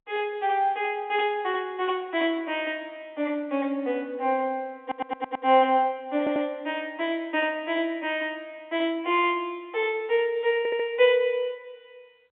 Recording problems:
phone line; 280 Hz to 3.6 kHz, G.711
stutter; at 5 s, at 6 s and at 11 s

